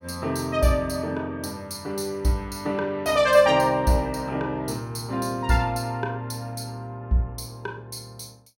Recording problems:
none

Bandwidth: 16.5 kHz